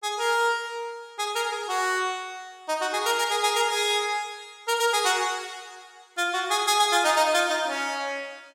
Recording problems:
none

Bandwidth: 16.5 kHz